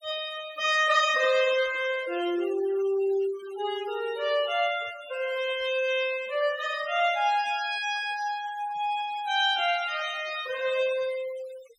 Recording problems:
denoising artefacts; signal-to-artefact ratio 16 dB

